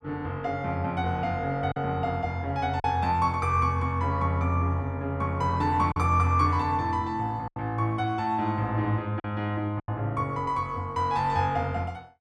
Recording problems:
packet loss; 3% of the sound replaced, filled with silence

